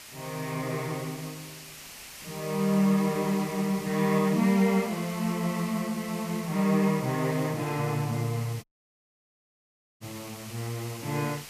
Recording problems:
background hiss; slope +1 dB per octave, SNR 14 dB
audio cutting out; at 8.5 s for 1.5 s

